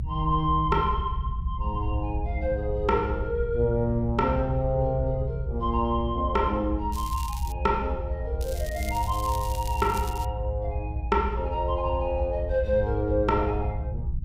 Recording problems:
low-frequency rumble; below 72 Hz, strongest tone 56 Hz, SNR 4 dB
crackling; at 7 s and from 8.5 to 10 s; loose cable, SNR 14 dB

